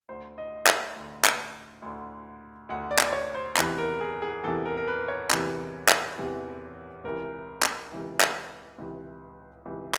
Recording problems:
lossy codec; Opus, log-spectral distance 3 dB, nothing above 18.9 kHz

